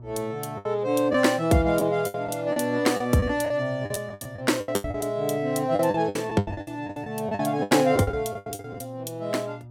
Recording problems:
hum; 60 Hz, harmonics up to 960 Hz, SNR 18 dB
packet loss; 15% of the sound replaced, filled with the last packet

